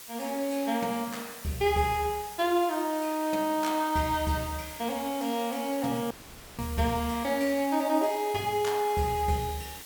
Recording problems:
hiss; slope +1 dB per octave, SNR 13 dB
dropout; at 6 s

